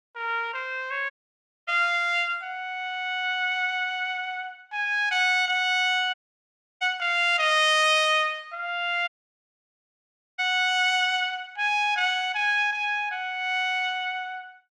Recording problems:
audio cutting out; at 1 s for 0.5 s, at 6 s for 0.5 s and at 9 s for 1.5 s

